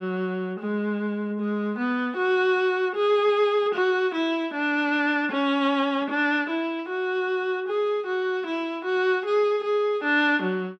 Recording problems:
none

